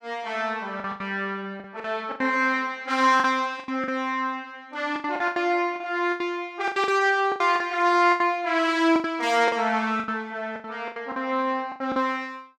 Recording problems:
lost packets; 13% of the sound replaced, filled with the last packet

